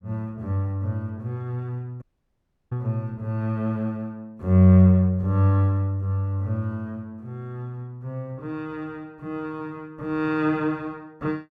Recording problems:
audio cutting out; at 2 s for 0.5 s

